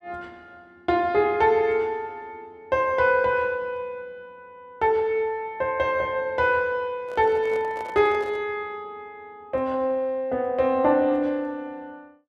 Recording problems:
handling noise; from 7 to 8.5 s; peak -11 dB vs average level

